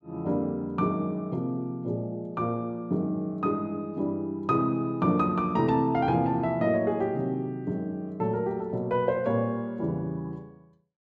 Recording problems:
none

